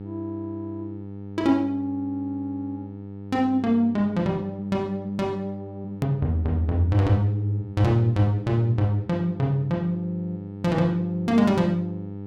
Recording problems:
hum; 50 Hz, harmonics up to 900 Hz, SNR 13 dB
edit click; at 6 s

